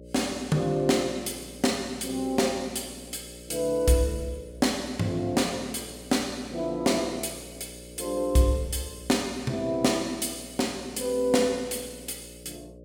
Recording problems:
hum; 60 Hz, harmonics up to 600 Hz, SNR 18 dB

